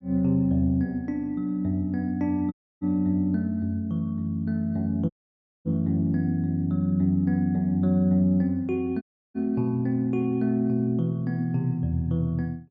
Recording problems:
audio cutting out; at 2.5 s, at 5 s for 0.5 s and at 9 s

